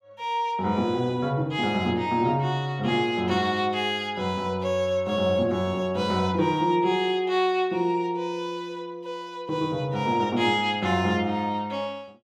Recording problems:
none

